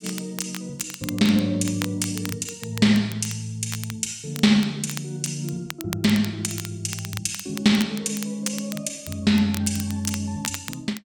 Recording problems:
crackle; vinyl, SNR 13 dB

